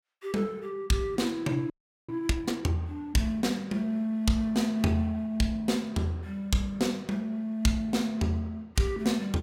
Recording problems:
audio freezing; at 1.5 s

